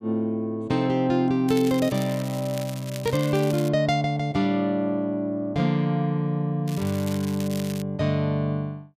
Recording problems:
crackle; from 1.5 to 3.5 s and from 6.5 to 8 s; loose cable, SNR 15 dB

